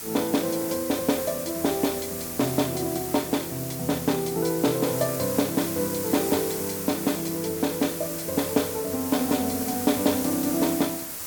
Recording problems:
background hiss; SNR 5 dB

